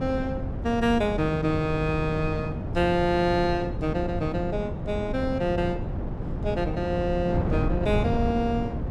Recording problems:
wind on the microphone; below 230 Hz, SNR 4 dB

